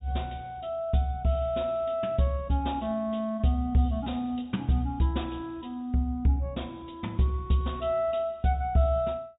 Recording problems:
treble missing; nothing above 4 kHz

